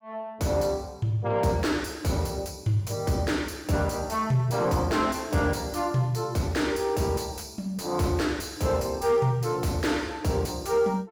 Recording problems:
distorted audio; soft clipping, signal-to-distortion ratio 12 dB

